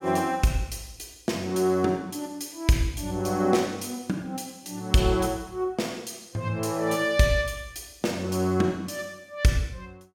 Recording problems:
none

